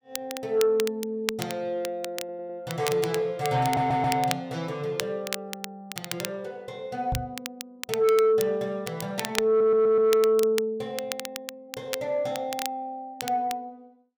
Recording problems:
distorted audio; soft clipping, signal-to-distortion ratio 11 dB
crackling; vinyl, SNR 10 dB
audio stuttering; at 2 s, at 3.5 s and at 9.5 s
microphone bump; at 7 s; peak -1 dB vs average level

